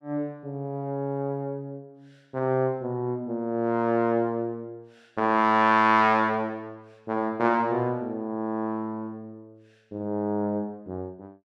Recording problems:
none

